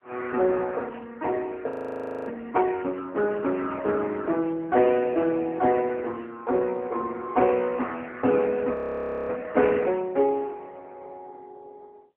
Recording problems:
phone line; 240 Hz to 2.5 kHz, AMR-NB
audio freezing; at 1.5 s for 0.5 s and at 8.5 s for 0.5 s

